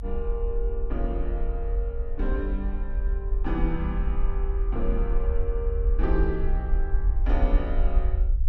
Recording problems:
rumble; below 50 Hz, SNR -5 dB

